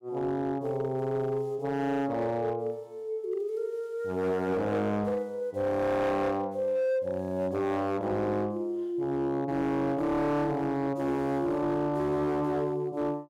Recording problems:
distortion; hard clipping, signal-to-distortion ratio 11 dB

